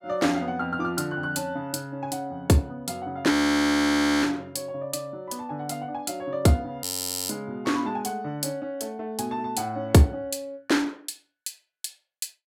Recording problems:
audio freezing; at 3.5 s for 1 s and at 7 s

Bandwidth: 16.5 kHz